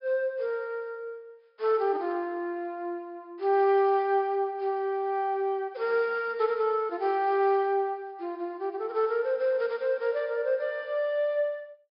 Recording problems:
low-pass filter; nothing above 5.5 kHz

